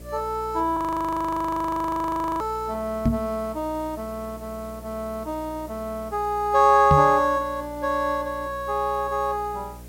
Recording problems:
hum; 60 Hz, harmonics up to 660 Hz, SNR 19 dB
hiss; slope -2 dB per octave, SNR 25 dB
frozen audio; at 1 s for 1.5 s
microphone bump; at 3 s and at 7 s; peak +6 dB vs average level

